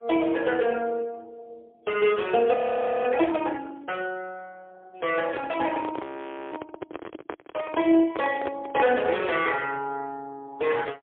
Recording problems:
phone line; 280 Hz to 3.3 kHz, AMR-NB, then MP3
frozen audio; at 2.5 s for 0.5 s and at 6 s
handling noise; from 5 to 9 s; peak 0 dB vs average level

